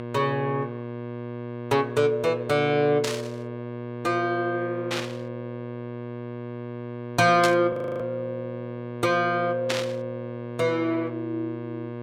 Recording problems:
hum; 60 Hz, harmonics up to 1.7 kHz, SNR 10 dB
static burst; 4 times, first at 3 s; peak +2 dB vs average level
frozen audio; at 7.5 s

